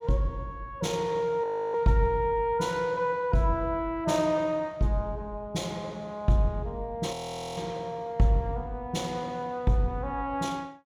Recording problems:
audio freezing; at 1.5 s and at 7 s

